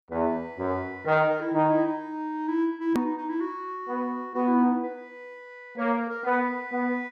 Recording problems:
hard cut with a click; at 3 s

